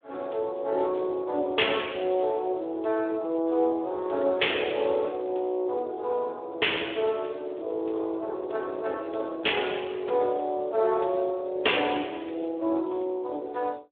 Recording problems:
telephone audio; 260 Hz to 3.6 kHz, Speex

